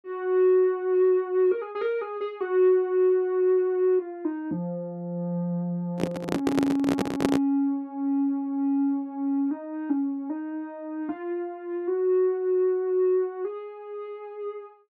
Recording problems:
handling noise; from 6 to 7.5 s; peak +5 dB vs average level

